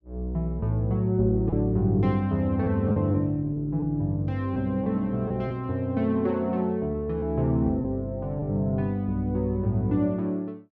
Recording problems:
lost packets; 3% of the sound replaced, filled with repeated pitch periods

